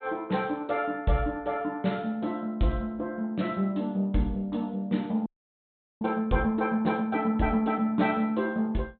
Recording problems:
low-pass filter; nothing above 4 kHz
audio freezing; at 5.5 s for 1 s

